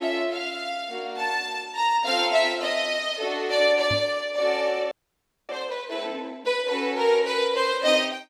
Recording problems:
knock on the microphone; at 4 s; peak -4 dB vs average level
frozen audio; at 5 s for 0.5 s

